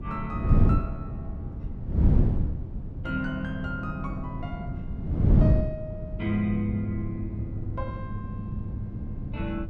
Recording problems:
wind noise; below 170 Hz, SNR -4 dB

